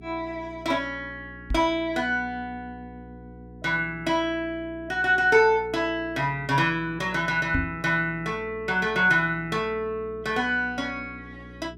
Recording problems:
electrical hum; 60 Hz, harmonics up to 420 Hz, SNR 20 dB
microphone bump; at 1.5 s and at 7.5 s; peak +2 dB vs average level

